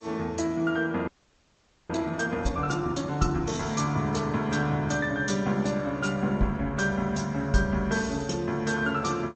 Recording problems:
lossy codec; G.722, then MP3, log-spectral distance 3 dB
audio freezing; at 1 s for 1 s

